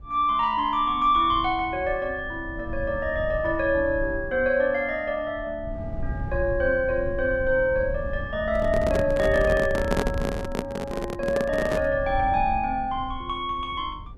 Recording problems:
rumble; below 100 Hz, SNR 11 dB
handling noise; from 8.5 to 12 s; peak +2 dB vs average level

